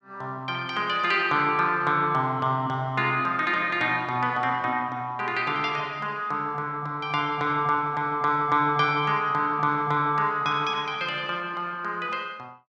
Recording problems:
none

